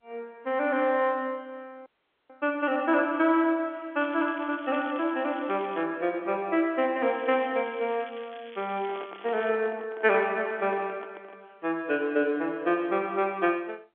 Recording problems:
phone line; 260 Hz to 3.5 kHz, G.711
dropout; at 2 s
crackling; from 4 to 6 s and from 7 to 9.5 s; loose cable, SNR 23 dB
microphone handling noise; from 9 to 11 s; peak -9 dB vs average level

